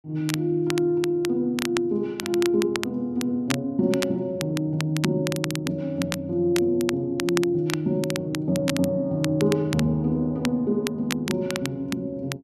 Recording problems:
crackle; vinyl, SNR 10 dB

